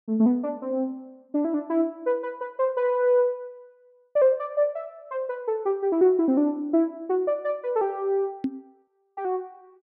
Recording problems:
microphone bump; at 8.5 s; peak +2 dB vs average level

